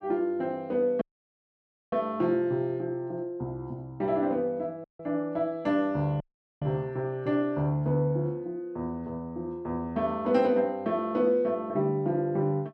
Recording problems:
audio cutting out; at 1 s for 1 s, at 5 s and at 6 s

